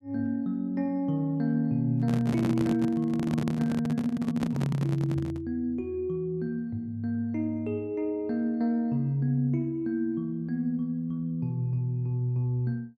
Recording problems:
microphone handling noise; from 2 to 5.5 s; peak +3 dB vs average level

